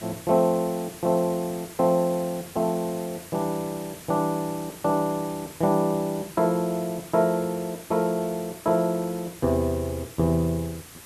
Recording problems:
hiss; slope -1 dB per octave, SNR 16 dB

